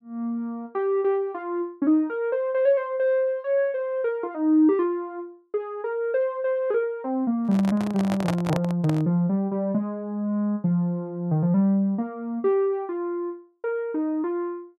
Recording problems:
handling noise; from 7.5 to 9 s; peak +1 dB vs average level

